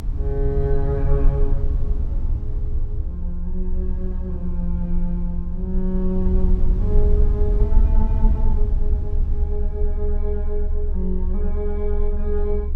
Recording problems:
rumble; below 64 Hz, strongest tone 22 Hz, SNR -5 dB

